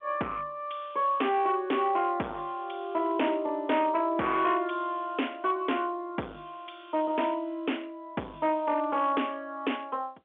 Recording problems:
telephone audio; 240 Hz to 3.3 kHz, G.711
distortion; hard clipping, uneven, signal-to-distortion ratio 9 dB

